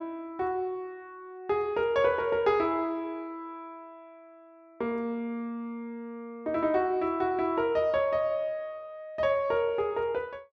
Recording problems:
none

